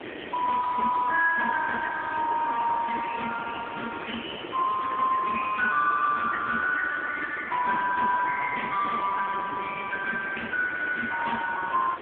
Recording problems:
telephone audio; 300 Hz to 2.7 kHz, AMR-NB
background hiss; SNR 12 dB

